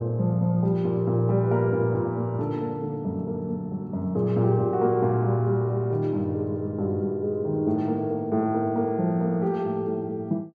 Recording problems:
none

